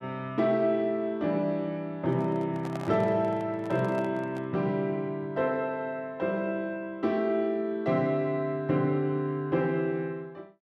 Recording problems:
microphone handling noise; from 2 to 4.5 s; peak -6 dB vs average level

